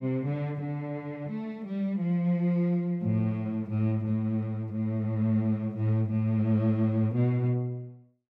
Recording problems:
none

